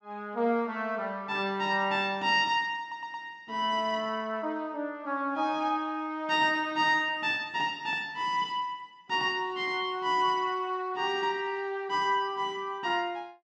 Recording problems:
audio stuttering; at 3 s

